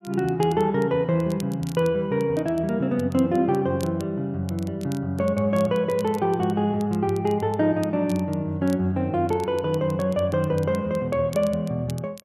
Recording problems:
crackling; vinyl, SNR 24 dB

